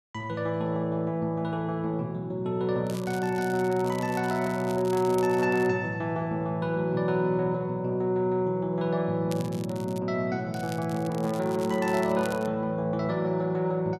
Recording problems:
crackle; from 3 to 5.5 s, at 9.5 s and from 11 to 12 s; loose cable, SNR 19 dB

